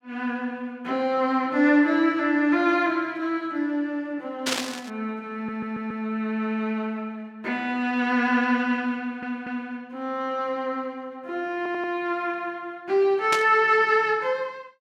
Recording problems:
burst of static; at 4.5 s and at 13 s; peak +4 dB vs average level
audio stuttering; at 5.5 s, at 9 s and at 12 s

